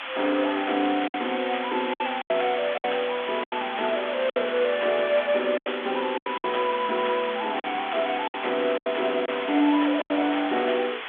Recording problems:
telephone audio; 240 Hz to 3.5 kHz, G.726
hiss; SNR 8 dB
lost packets; 8% of the sound replaced, filled with silence

